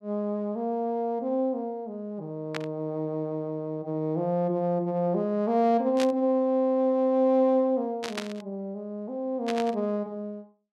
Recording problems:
burst of static; 4 times, first at 2.5 s; peak -2 dB vs average level

